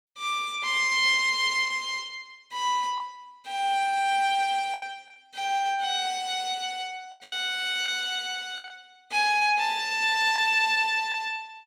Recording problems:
packet loss; 4% of the sound replaced, filled with the last packet

